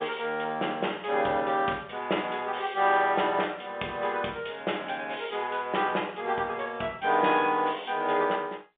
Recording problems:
telephone audio; 260 Hz to 3.6 kHz, G.711

